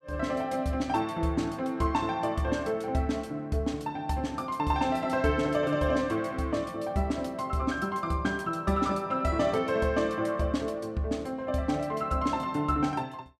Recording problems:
none

